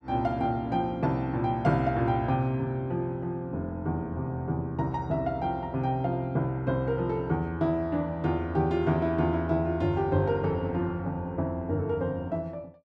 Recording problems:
none

